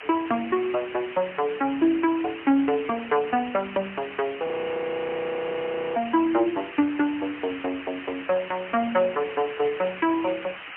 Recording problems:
phone line; 240 Hz to 3.3 kHz, AMR-NB, then MP3
hiss; SNR 11 dB
audio freezing; at 4.5 s for 1.5 s

